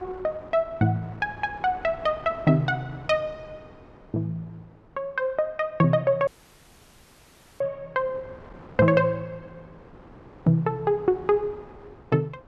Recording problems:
wind noise; below 850 Hz, SNR 22 dB
dropout; at 6.5 s for 1.5 s

